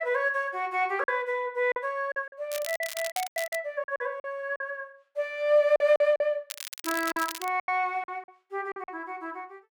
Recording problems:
packet loss; 11% of the sound replaced, filled with silence
crackling; from 2.5 to 3.5 s and at 6.5 s; loose cable, SNR 9 dB

